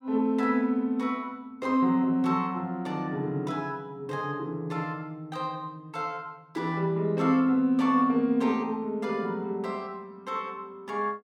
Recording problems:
none

